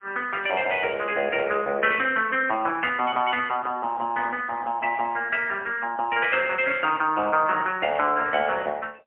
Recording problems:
telephone audio; 240 Hz to 3 kHz, AMR-NB, then MP3

